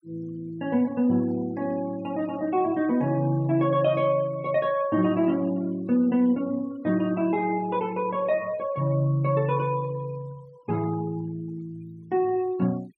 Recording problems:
noise reduction artefacts; signal-to-artefact ratio 25 dB

